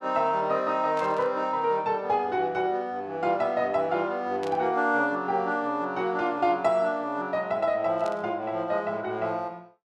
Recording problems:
burst of static; at 1 s, at 4.5 s and at 8 s; peak -11 dB vs average level

